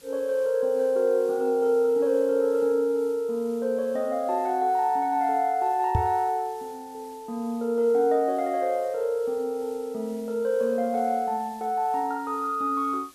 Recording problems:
background hiss; slope 0 dB per octave, SNR 27 dB
microphone thump; at 6 s; peak +4 dB vs average level

